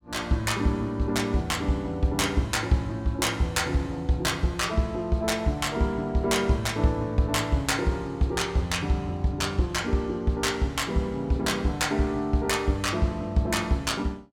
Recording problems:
none

